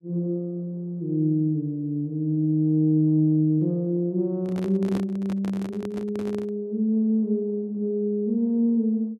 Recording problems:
microphone handling noise; from 4.5 to 6.5 s; peak -4 dB vs average level

